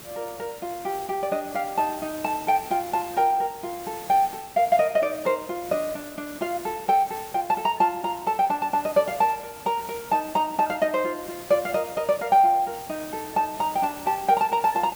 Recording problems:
background hiss; slope -2 dB per octave, SNR 16 dB

